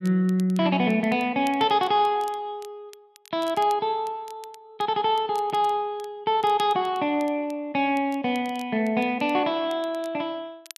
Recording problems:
crackle; vinyl, SNR 26 dB

